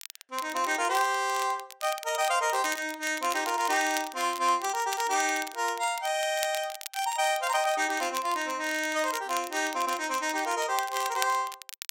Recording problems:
crackle; vinyl, SNR 12 dB

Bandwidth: 16 kHz